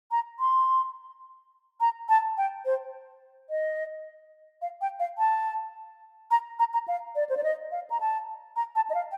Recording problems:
none

